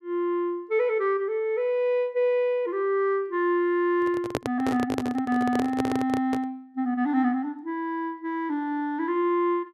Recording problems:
microphone handling noise; from 4 to 6.5 s; peak +3 dB vs average level

